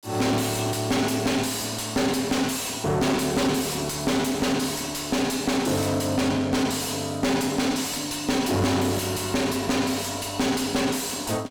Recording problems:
distortion; soft clipping, signal-to-distortion ratio 5 dB

